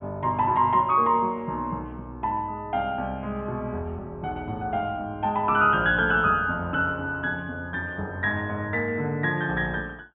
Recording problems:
treble missing; nothing above 3.4 kHz

